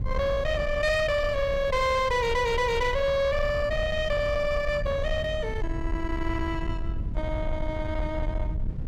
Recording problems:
distortion; soft clipping, signal-to-distortion ratio 11 dB
low-frequency rumble; below 110 Hz, SNR 6 dB
audio stuttering; at 2 s

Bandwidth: 17.5 kHz